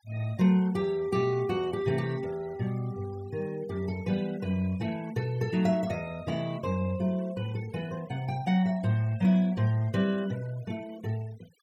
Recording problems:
noise reduction artefacts; signal-to-artefact ratio 22 dB

